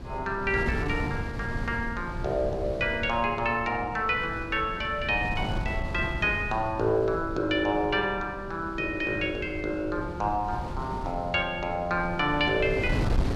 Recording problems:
wind noise; below 240 Hz, SNR 8 dB

